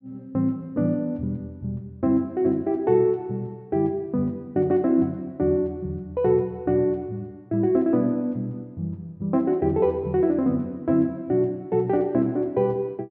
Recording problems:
none

